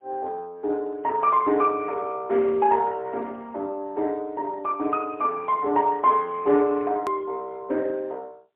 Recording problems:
telephone audio; 300 Hz to 3.2 kHz, AMR-NB, then MP3
hard cut with a click; at 7 s

